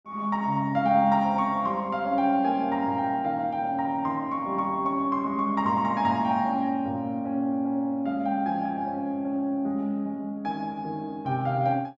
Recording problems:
none

